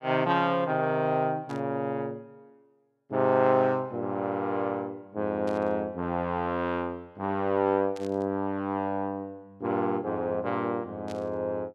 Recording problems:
static burst; 4 times, first at 1.5 s; peak -13 dB vs average level

